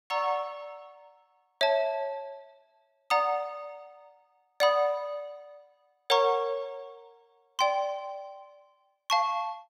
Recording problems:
none

